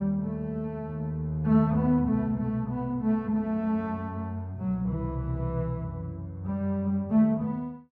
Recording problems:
none

